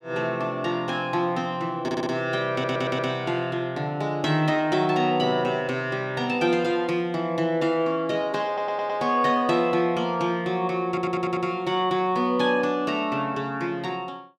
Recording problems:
stutter; 4 times, first at 2 s

